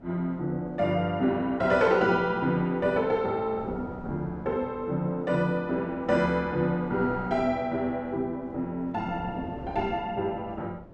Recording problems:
wind on the microphone; below 490 Hz, SNR 17 dB

